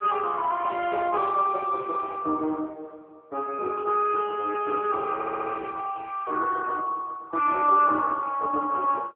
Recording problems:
phone line; 260 Hz to 3.5 kHz, AMR-NB
audio stuttering; at 5 s

